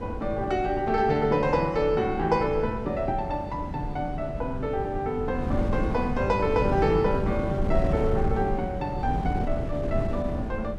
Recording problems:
wind on the microphone; below 230 Hz, SNR 5 dB

